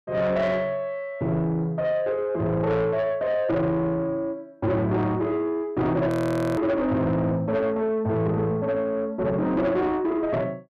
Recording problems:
distortion; soft clipping, signal-to-distortion ratio 10 dB
frozen audio; at 6 s

